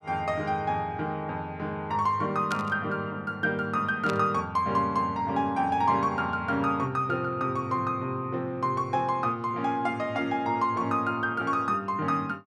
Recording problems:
static burst; at 2.5 s and at 4 s; peak -4 dB vs average level

